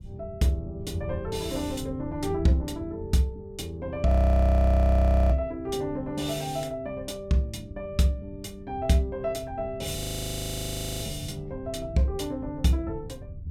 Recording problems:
low-frequency rumble; below 130 Hz, SNR 14 dB
audio freezing; at 4 s for 1 s and at 10 s for 1 s

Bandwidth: 17 kHz